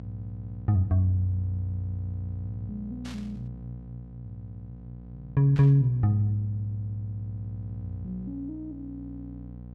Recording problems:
electrical hum; 60 Hz, harmonics up to 540 Hz, SNR 14 dB
static burst; at 3 s and at 5.5 s; peak -13 dB vs average level

